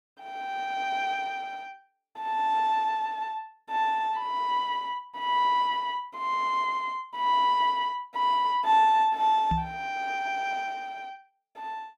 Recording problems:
microphone thump; at 9.5 s; peak 0 dB vs average level

